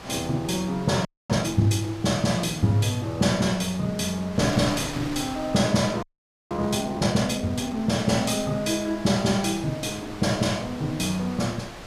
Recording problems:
wind noise; below 2.7 kHz, SNR 14 dB
frozen audio; at 1 s and at 6 s

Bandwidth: 15 kHz